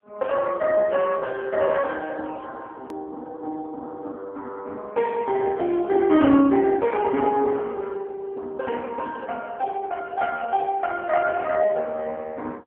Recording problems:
phone line; 240 Hz to 3.2 kHz, AMR-NB
hard cut with a click; at 3 s

